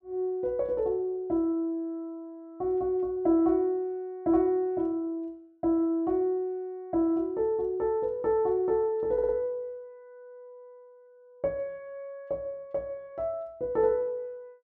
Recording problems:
audio stuttering; at 9 s

